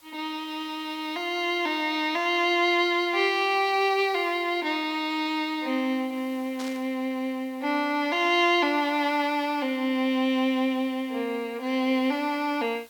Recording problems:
background hiss; SNR 27 dB
static burst; at 6.5 s; peak -10 dB vs average level

